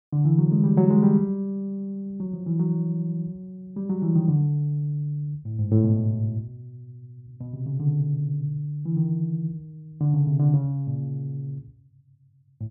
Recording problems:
none

